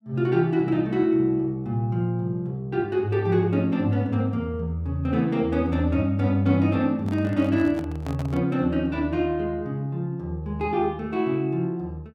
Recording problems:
handling noise; from 7 to 8.5 s; peak -9 dB vs average level

